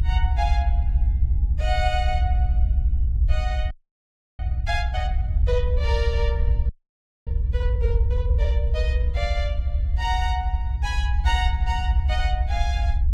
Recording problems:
low-frequency rumble; below 74 Hz, SNR -6 dB
frozen audio; at 3.5 s for 0.5 s and at 6.5 s for 0.5 s

